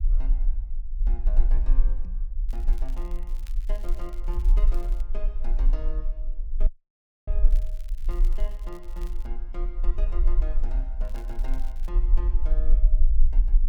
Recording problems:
low-frequency rumble; below 36 Hz, strongest tone 26 Hz, SNR -16 dB
knock on the microphone; at 2 s; peak +3 dB vs average level
crackling; from 2.5 to 5 s, from 7.5 to 9.5 s and at 11 s; loose cable, SNR 12 dB
audio cutting out; at 6.5 s for 0.5 s

